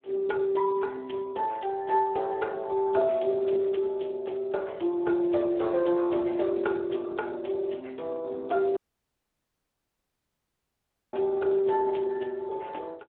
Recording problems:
phone line; 280 Hz to 3.4 kHz, Speex
audio cutting out; at 9 s for 2.5 s

